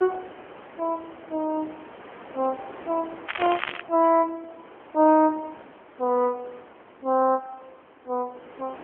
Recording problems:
telephone audio; 260 Hz to 3 kHz, AMR-NB
wind on the microphone; below 1.4 kHz, SNR 19 dB
crackling; at 3.5 s; loose cable, SNR 8 dB

